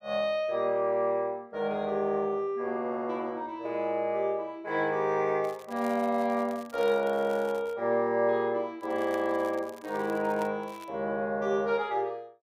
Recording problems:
crackling; from 5.5 to 8 s, from 9 to 10 s and at 11 s; loose cable, SNR 24 dB

